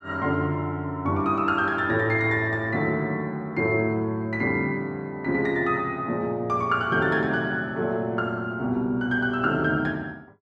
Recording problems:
none

